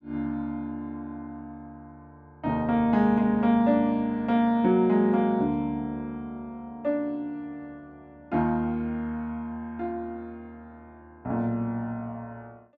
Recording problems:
none

